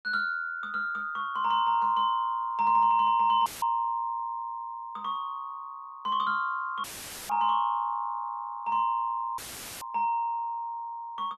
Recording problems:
dropout; at 3.5 s, at 7 s and at 9.5 s; filled with static

